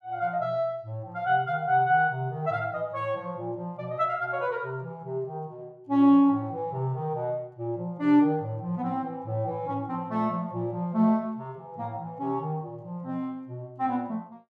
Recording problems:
none

